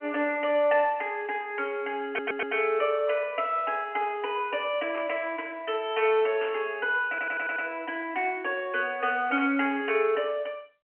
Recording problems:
telephone audio; 240 Hz to 3.1 kHz, G.711
stutter; at 2 s and at 7 s
burst of static; at 5 s, at 6.5 s and at 9.5 s; peak -7 dB vs average level

